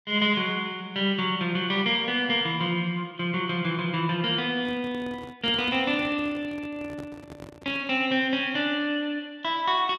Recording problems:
microphone handling noise; from 4.5 to 8 s; peak -9 dB vs average level

